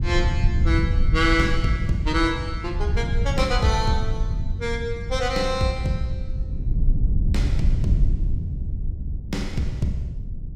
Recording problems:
low-frequency rumble; below 90 Hz, SNR 0 dB

